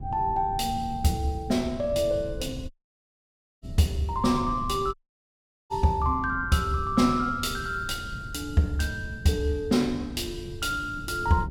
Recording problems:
wind on the microphone; below 140 Hz, SNR 12 dB
dropout; at 2.5 s for 1 s and at 5 s for 1 s

